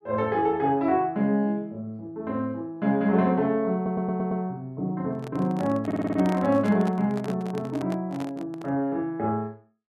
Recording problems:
audio stuttering; at 4 s and at 6 s
microphone handling noise; from 5 to 8.5 s; peak -6 dB vs average level

